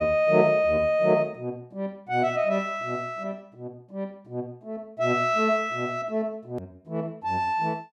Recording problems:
hard cut with a click; at 6.5 s

